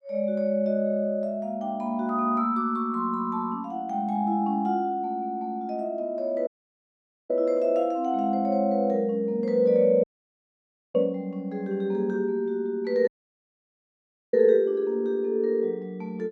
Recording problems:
audio cutting out; at 6.5 s for 1 s, at 10 s for 1 s and at 13 s for 1.5 s

